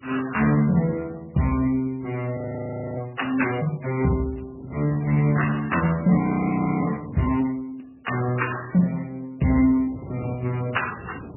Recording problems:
codec artefacts; Speex, then MP3, log-spectral distance 6 dB, nothing above 2.8 kHz
wind on the microphone; below 360 Hz, SNR 18 dB
frozen audio; at 2.5 s for 0.5 s and at 6 s for 0.5 s

